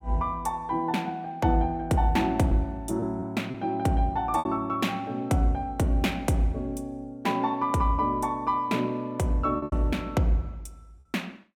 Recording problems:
packet loss; 3% of the sound replaced, filled with repeated pitch periods

